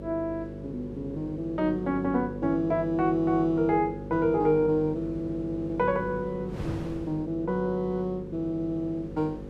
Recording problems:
electrical hum; 50 Hz, harmonics up to 550 Hz, SNR 11 dB
wind noise; below 380 Hz, SNR 19 dB

